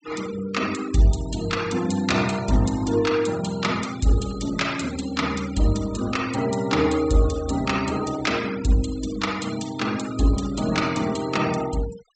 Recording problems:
treble missing; nothing above 8 kHz
noise reduction artefacts; signal-to-artefact ratio 16 dB

